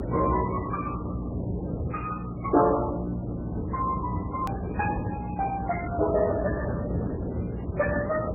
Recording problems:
codec artefacts; Speex, then MP3, log-spectral distance 3 dB, nothing above 2.5 kHz
electrical hum; 60 Hz, harmonics up to 300 Hz, SNR 6 dB
hiss; SNR 18 dB
low-frequency rumble; below 420 Hz, SNR 5 dB
edit click; at 4.5 s

